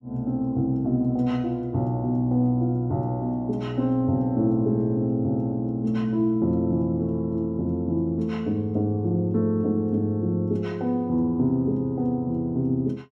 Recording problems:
none

